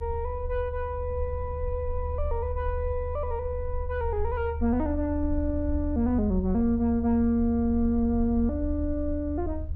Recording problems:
rumble; below 76 Hz, SNR 6 dB

